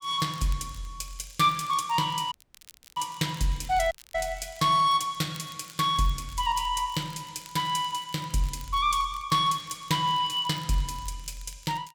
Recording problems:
crackling; vinyl, SNR 24 dB
dropout; at 2.5 s for 0.5 s and at 4 s

